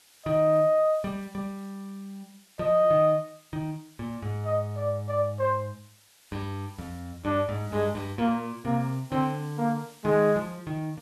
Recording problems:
background hiss; slope +1 dB per octave, SNR 27 dB

